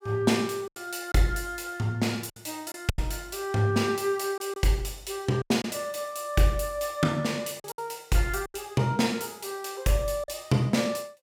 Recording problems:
lost packets; 6% of the sound replaced, filled with silence

